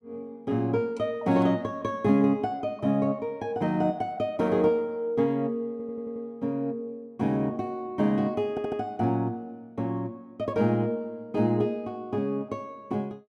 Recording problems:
stutter; at 5.5 s and at 8.5 s

